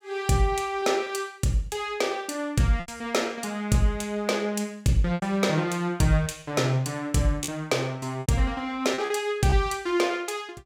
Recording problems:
packet loss; 5% of the sound replaced, filled with repeated pitch periods

